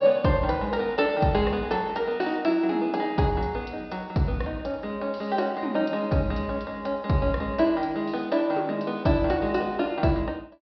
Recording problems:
treble missing; nothing above 5.5 kHz

